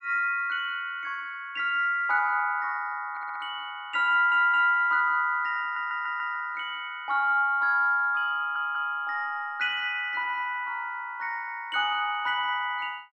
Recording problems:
stutter; 4 times, first at 3 s

